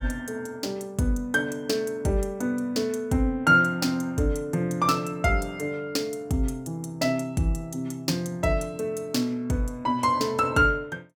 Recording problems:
none

